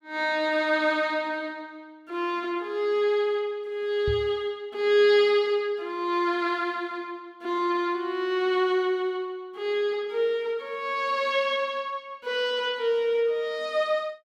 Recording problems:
knock on the microphone; at 4 s; peak -2 dB vs average level

